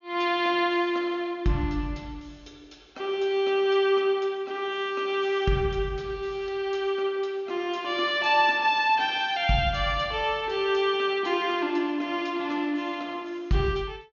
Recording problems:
treble cut off; nothing above 6.8 kHz

